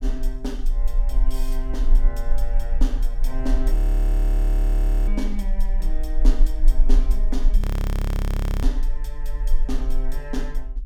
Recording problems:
low-frequency rumble; below 36 Hz, strongest tone 24 Hz, SNR -9 dB
audio freezing; at 4 s for 1.5 s and at 7.5 s for 1 s

